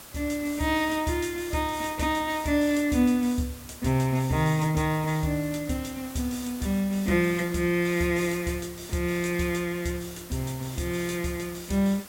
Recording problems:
hiss; slope -2 dB per octave, SNR 16 dB

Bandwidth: 16.5 kHz